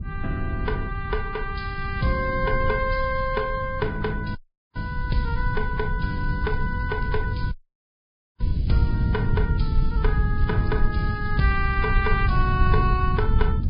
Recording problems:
treble missing; nothing above 5 kHz
lossy compression; Vorbis, log-spectral distance 2 dB
rumble; below 100 Hz, SNR 0 dB
dropout; at 4.5 s and at 7.5 s for 1 s
crackling; from 6 to 9 s and from 10 to 12 s; loose cable, SNR 27 dB

